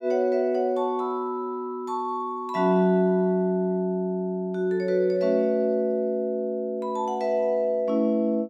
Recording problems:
none

